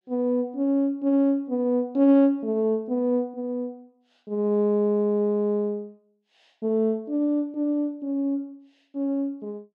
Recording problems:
none

